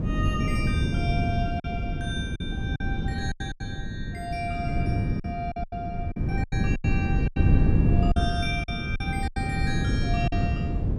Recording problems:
wind on the microphone; below 190 Hz, SNR -7 dB
lost packets; 9% of the sound replaced, filled with silence

